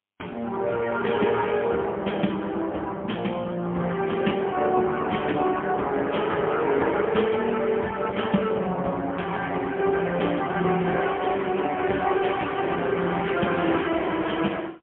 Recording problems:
phone line; 170 Hz to 3.3 kHz, AMR-NB, then MP3

